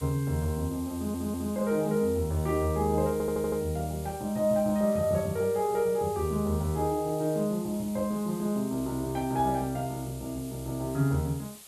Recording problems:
background hiss; SNR 17 dB
stutter; at 1 s and at 3 s

